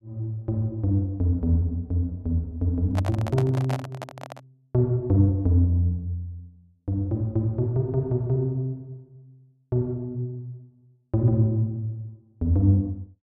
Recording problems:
microphone handling noise; from 3 to 4.5 s; peak -3 dB vs average level

